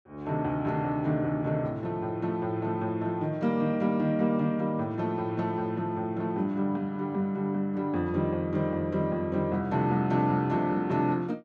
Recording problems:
none

